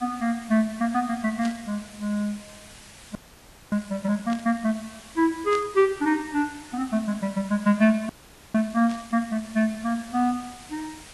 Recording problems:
lossy compression; AAC, log-spectral distance 6 dB
hiss; slope -1 dB per octave, SNR 20 dB
burst of static; 4 times, first at 1.5 s; peak -9 dB vs average level
audio freezing; at 3 s for 0.5 s and at 8 s

